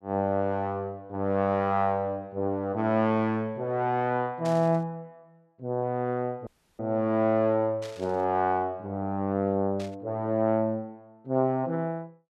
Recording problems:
static burst; at 4.5 s, at 8 s and at 10 s; peak -10 dB vs average level
dropout; at 6.5 s

